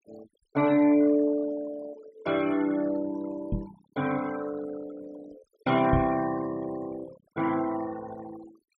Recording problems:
denoising artefacts; signal-to-artefact ratio 18 dB
knock on the microphone; at 3.5 s and at 6 s; peak +4 dB vs average level

